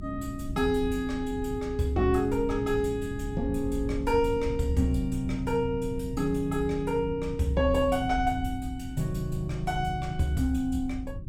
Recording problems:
hum; 60 Hz, harmonics up to 360 Hz, SNR 18 dB
wind on the microphone; below 98 Hz, SNR 9 dB

